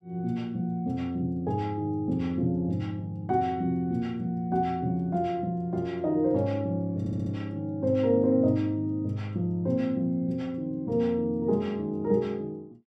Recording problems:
audio stuttering; at 7 s

